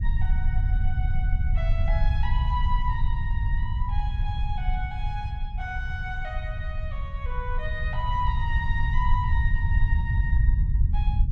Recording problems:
low-frequency rumble; below 76 Hz, SNR -7 dB

